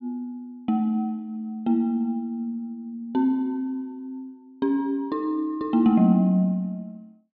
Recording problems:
none

